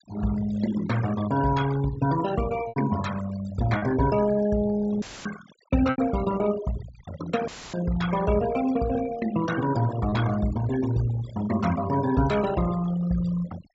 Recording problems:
treble cut off; nothing above 8 kHz
denoising artefacts; signal-to-artefact ratio 14 dB
lost packets; 1.6% of the sound replaced, filled with repeated pitch periods
dropout; at 5 s and at 7.5 s; filled with static

